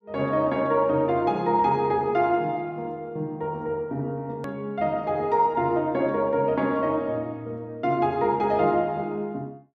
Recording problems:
edit click; at 4.5 s

